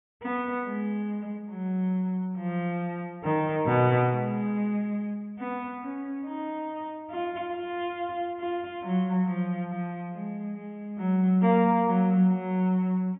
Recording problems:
treble cut off; nothing above 4 kHz

